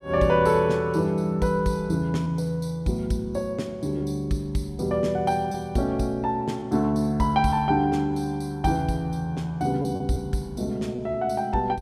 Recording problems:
lost packets; 1.9% of the sound replaced, filled with repeated pitch periods

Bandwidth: 15 kHz